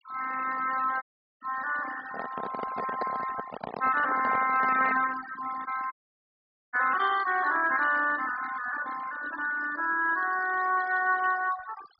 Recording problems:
treble cut off; nothing above 5.5 kHz
denoising artefacts; signal-to-artefact ratio 13 dB
dropout; at 1 s and at 6 s for 1 s
handling noise; from 2 to 5 s; peak -1 dB vs average level

